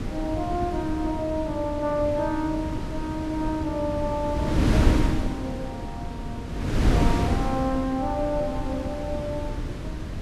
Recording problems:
wind on the microphone; below 290 Hz, SNR 0 dB

